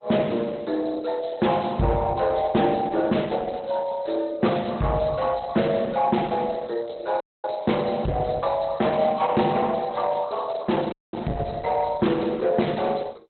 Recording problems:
codec artefacts; Opus, log-spectral distance 5 dB, nothing above 4.1 kHz
distortion; soft clipping, signal-to-distortion ratio 12 dB
dropout; at 7 s and at 11 s

